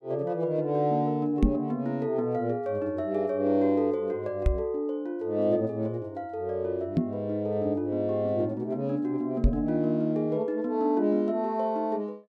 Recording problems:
microphone thump; 4 times, first at 1.5 s; peak +8 dB vs average level

